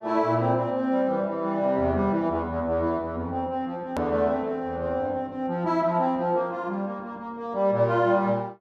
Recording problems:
edit click; at 4 s

